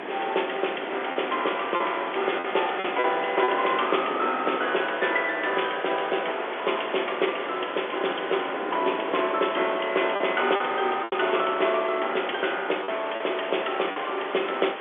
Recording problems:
telephone audio; 300 Hz to 3.5 kHz, G.711
hiss; SNR 9 dB
wind noise; below 740 Hz, SNR 12 dB
lost packets; 4% of the sound replaced, filled with repeated pitch periods

